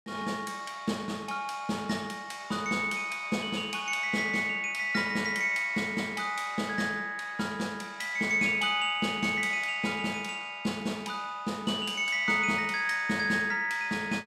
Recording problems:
none

